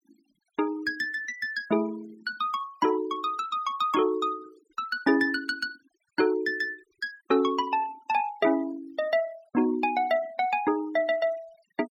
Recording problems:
denoising artefacts; signal-to-artefact ratio 21 dB

